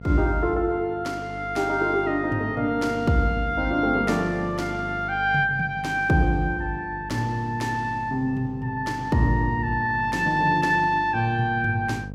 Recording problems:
electrical hum; 50 Hz, harmonics up to 750 Hz, SNR 15 dB

